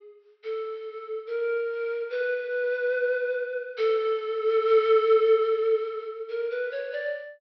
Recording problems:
low-pass filter; nothing above 5.8 kHz

